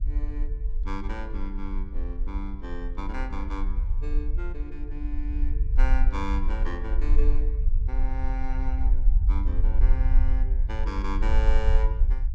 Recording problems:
rumble; below 48 Hz, strongest tone 20 Hz, SNR -9 dB

